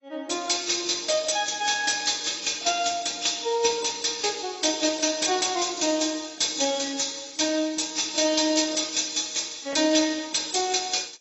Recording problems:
lossy compression; AAC, log-spectral distance 11 dB, nothing above 7.8 kHz

